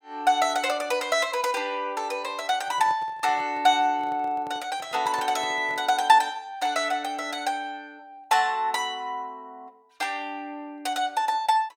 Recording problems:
microphone handling noise; from 2.5 to 6 s; peak -11 dB vs average level

